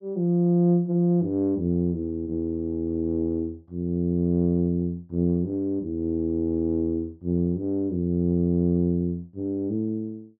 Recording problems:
none

